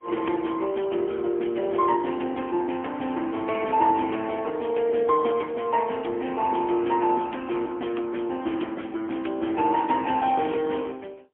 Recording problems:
telephone audio; 260 Hz to 3.3 kHz, AMR-NB, then MP3

